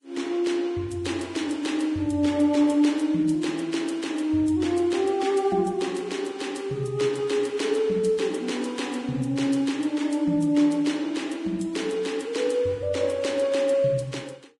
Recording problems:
lossy compression; Vorbis, log-spectral distance 3 dB, nothing above 10.4 kHz

